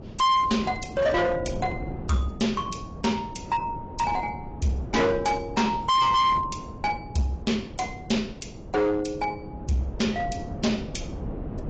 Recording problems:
lossy codec; AAC, log-spectral distance 2 dB, nothing above 7.6 kHz
distorted audio; hard clipping, uneven, signal-to-distortion ratio 7 dB
wind noise; below 340 Hz, SNR 12 dB

